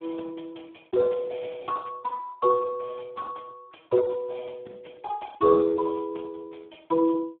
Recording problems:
telephone audio; 220 Hz to 2.5 kHz, Speex

